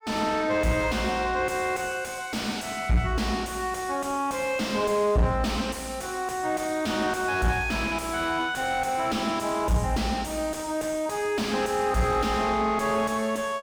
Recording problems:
distortion; soft clipping, signal-to-distortion ratio 7 dB

